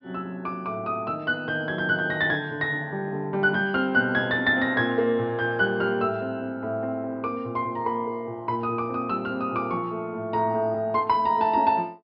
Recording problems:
treble cut off; nothing above 5.3 kHz

